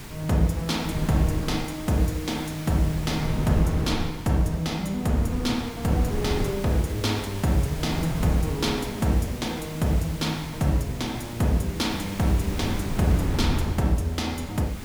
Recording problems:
hum; 50 Hz, harmonics up to 800 Hz, SNR 27 dB
hiss; SNR 15 dB
wind on the microphone; below 250 Hz, SNR 8 dB

